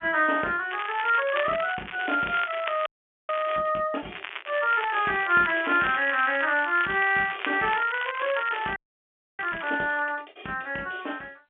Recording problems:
phone line; 300 Hz to 3.3 kHz, G.711
crackle; from 0.5 to 3.5 s and from 4 to 9.5 s; loose cable, SNR 11 dB
frozen audio; at 3 s and at 9 s for 0.5 s

